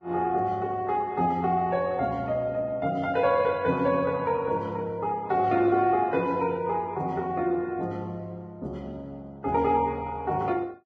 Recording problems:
lossy compression; Vorbis, log-spectral distance 2 dB

